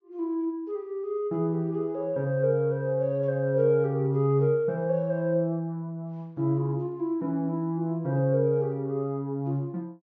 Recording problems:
low-pass filter; nothing above 6.8 kHz

